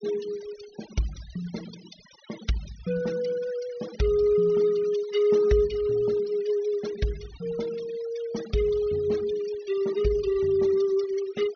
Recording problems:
low-pass filter; nothing above 6.4 kHz
denoising artefacts; signal-to-artefact ratio 18 dB

